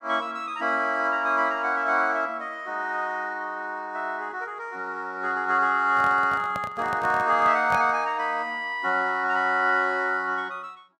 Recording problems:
microphone handling noise; from 6 to 8 s; peak -5 dB vs average level

